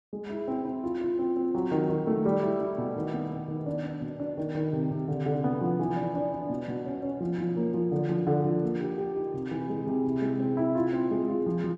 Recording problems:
none

